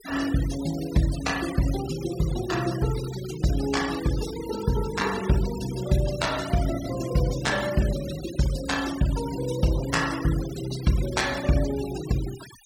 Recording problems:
noise reduction artefacts; signal-to-artefact ratio 12 dB

